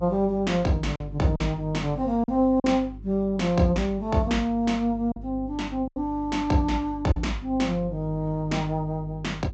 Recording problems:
treble cut off; nothing above 8 kHz
hum; 50 Hz, harmonics up to 400 Hz, SNR 15 dB
packet loss; 3% of the sound replaced, filled with silence

